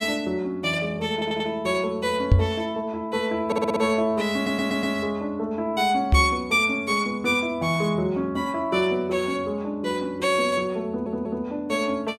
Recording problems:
audio stuttering; 4 times, first at 1 s
microphone thump; at 2.5 s and at 6 s; peak +9 dB vs average level

